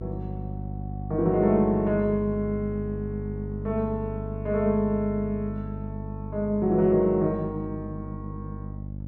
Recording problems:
mains hum; 50 Hz, harmonics up to 550 Hz, SNR 9 dB

